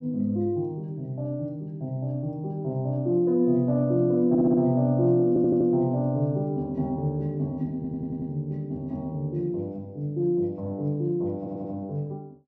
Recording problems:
stutter; 4 times, first at 4.5 s

